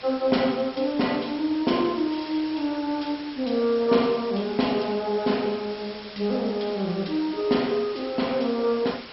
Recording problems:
codec artefacts; MP2, log-spectral distance 11 dB, nothing above 5.5 kHz
background hiss; slope -2 dB per octave, SNR 15 dB

